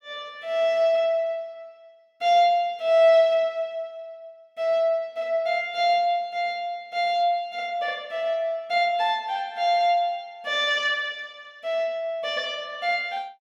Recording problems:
none

